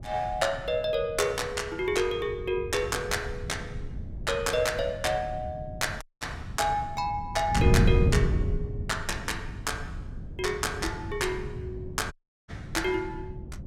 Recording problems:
wind on the microphone; below 150 Hz, SNR 4 dB
dropout; at 6 s and at 12 s

